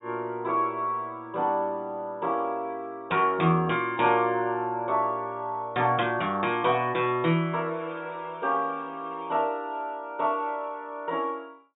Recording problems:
treble cut off; nothing above 4 kHz

